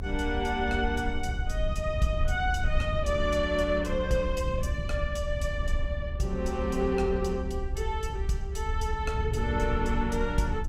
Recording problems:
rumble; below 68 Hz, SNR 4 dB
wind noise; below 130 Hz, SNR 10 dB

